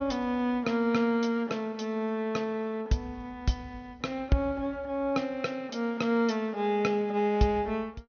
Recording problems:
treble missing; nothing above 6.4 kHz

